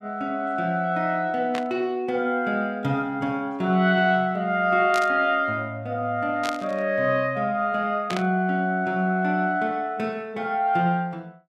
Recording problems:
static burst; 4 times, first at 1.5 s; peak -4 dB vs average level

